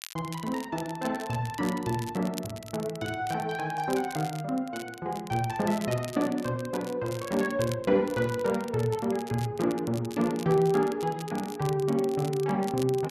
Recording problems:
crackle; vinyl, SNR 16 dB

